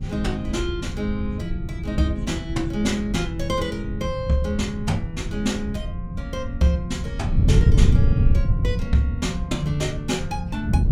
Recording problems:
wind on the microphone; below 120 Hz, SNR 0 dB

